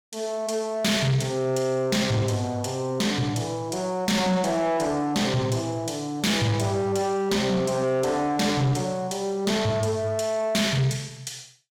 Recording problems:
distorted audio; soft clipping, signal-to-distortion ratio 10 dB

